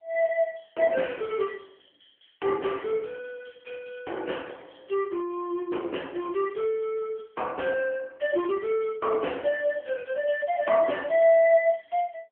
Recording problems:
phone line; 260 Hz to 3.2 kHz, AMR-NB

